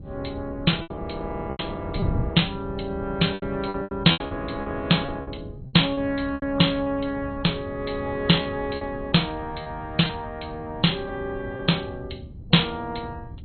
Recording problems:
codec artefacts; MP2, log-spectral distance 4 dB, nothing above 4.2 kHz
wind noise; below 170 Hz, SNR 12 dB
lost packets; 7% of the sound replaced, filled with repeated pitch periods

